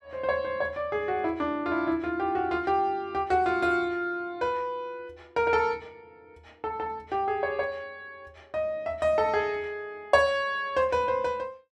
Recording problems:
none

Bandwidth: 12.5 kHz